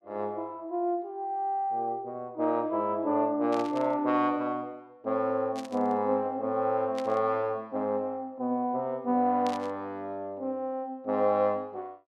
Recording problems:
static burst; 4 times, first at 3.5 s; peak -8 dB vs average level

